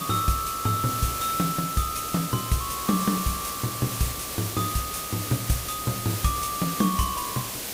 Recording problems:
background hiss; SNR 4 dB

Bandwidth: 15.5 kHz